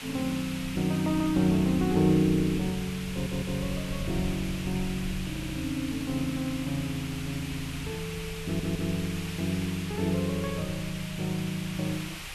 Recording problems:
hiss; SNR 10 dB
low-frequency rumble; below 100 Hz, SNR 15 dB
stutter; at 3 s, at 5.5 s and at 8.5 s

